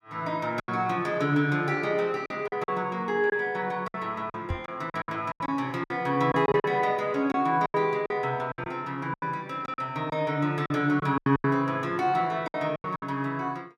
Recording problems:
packet loss; 11% of the sound replaced, filled with silence
microphone bump; at 4.5 s; peak 0 dB vs average level

